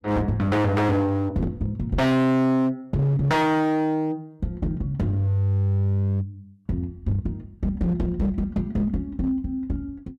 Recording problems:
distorted audio; hard clipping, signal-to-distortion ratio 7 dB

